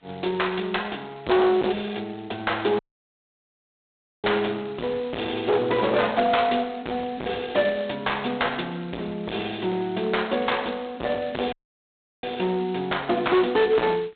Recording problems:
telephone audio; 280 Hz to 4 kHz, G.726
distorted audio; hard clipping, signal-to-distortion ratio 7 dB
audio cutting out; at 3 s for 1.5 s and at 12 s for 0.5 s

